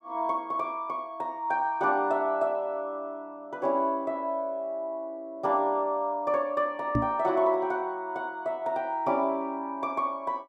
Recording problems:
microphone thump; at 7 s; peak +6 dB vs average level

